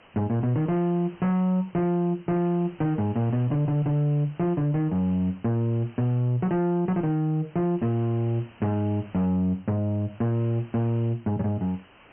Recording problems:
low-pass filter; nothing above 3.1 kHz
distorted audio; soft clipping, signal-to-distortion ratio 11 dB
background hiss; SNR 27 dB

